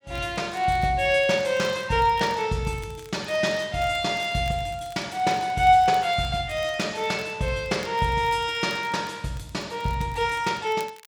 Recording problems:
crackling; vinyl, SNR 26 dB

